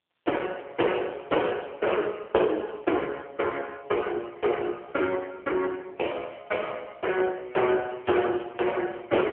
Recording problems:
telephone audio; 320 Hz to 3.2 kHz, AMR-NB

